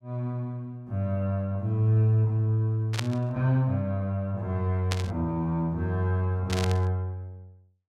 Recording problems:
static burst; at 3 s, at 5 s and at 6.5 s; peak 0 dB vs average level

